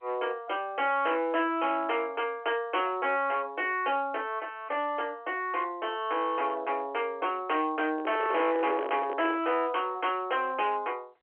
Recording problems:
telephone audio; 280 Hz to 3.3 kHz, G.711
distorted audio; hard clipping, uneven, signal-to-distortion ratio 10 dB
microphone handling noise; from 8 to 9.5 s; peak -1 dB vs average level

